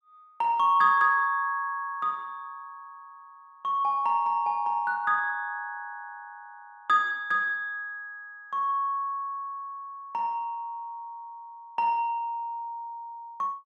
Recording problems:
none

